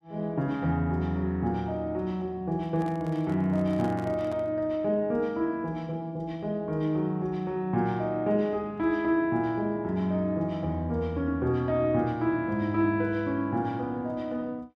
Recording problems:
microphone handling noise; from 2.5 to 4.5 s; peak -10 dB vs average level

